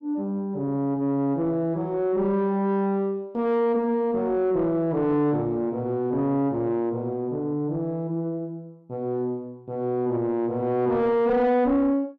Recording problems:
distortion; soft clipping, signal-to-distortion ratio 10 dB

